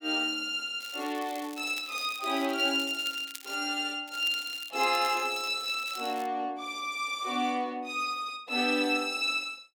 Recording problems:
crackle; from 1 to 3.5 s and from 4 to 6.5 s; loose cable, SNR 16 dB

